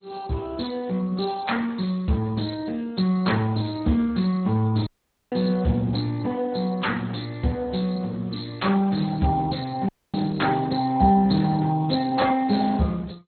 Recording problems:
lossy compression; Speex, then MP2, log-spectral distance 6 dB, nothing above 4.2 kHz
audio cutting out; at 5 s and at 10 s

